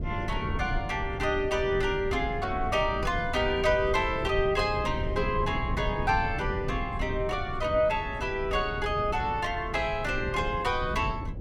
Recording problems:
rumble; below 160 Hz, SNR 7 dB

